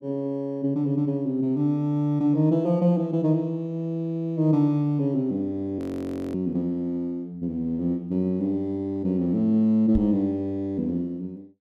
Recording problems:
frozen audio; at 6 s for 0.5 s
microphone bump; at 10 s; peak +1 dB vs average level

